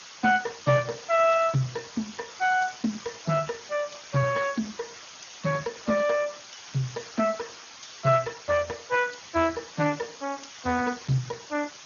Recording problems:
low-pass filter; nothing above 6.7 kHz
codec artefacts; Speex, log-spectral distance 22 dB
background hiss; slope +1 dB per octave, SNR 15 dB

